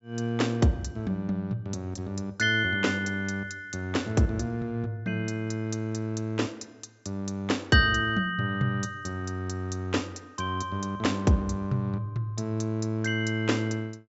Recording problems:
treble missing; nothing above 8 kHz

